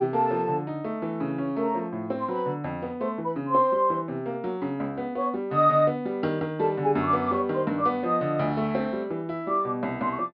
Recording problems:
treble cut off; nothing above 5.5 kHz

